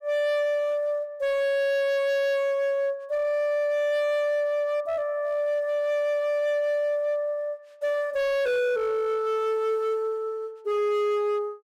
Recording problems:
distorted audio; hard clipping, signal-to-distortion ratio 11 dB

